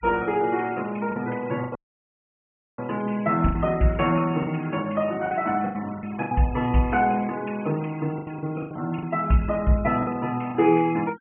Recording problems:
treble missing; nothing above 3.1 kHz
denoising artefacts; signal-to-artefact ratio 21 dB
packet loss; 8% of the sound replaced, filled with the last packet
dropout; at 2 s for 1 s

